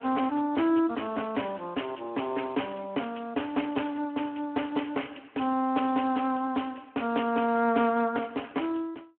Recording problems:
phone line; 220 Hz to 3.2 kHz, Speex

